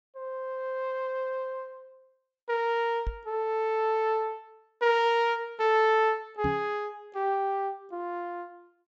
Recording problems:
treble cut off; nothing above 8 kHz
knock on the microphone; at 3 s and at 6.5 s; peak -1 dB vs average level

